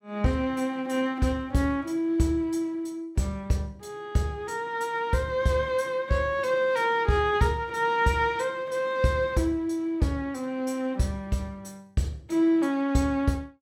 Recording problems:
none

